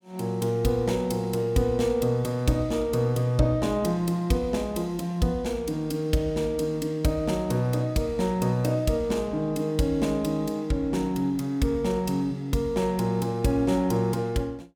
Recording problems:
none

